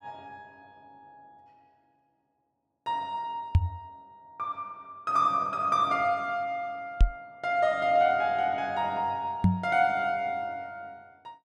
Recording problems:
knock on the microphone; at 3.5 s, at 7 s and at 9.5 s; peak +10 dB vs average level

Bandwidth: 13 kHz